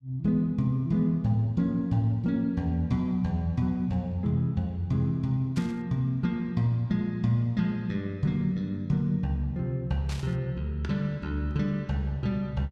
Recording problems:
static burst; at 5.5 s and at 10 s; peak -9 dB vs average level

